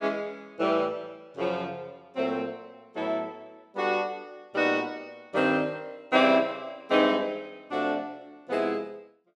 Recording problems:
none

